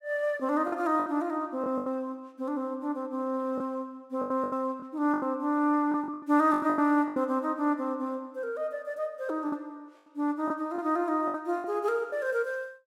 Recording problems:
lost packets; 9% of the sound replaced, filled with the last packet

